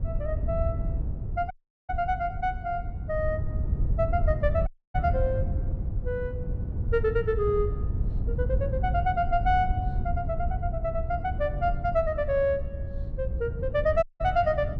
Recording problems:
wind on the microphone; below 100 Hz, SNR 2 dB
audio cutting out; at 1.5 s, at 4.5 s and at 14 s

